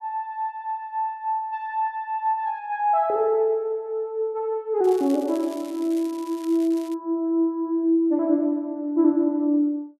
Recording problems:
crackle; from 5 to 7 s; loose cable, SNR 23 dB

